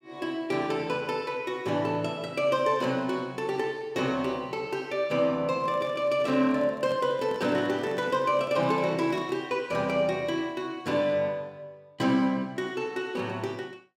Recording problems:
handling noise; from 5.5 to 9.5 s; peak -9 dB vs average level

